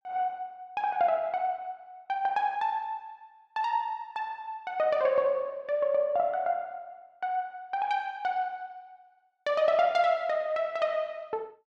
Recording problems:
none

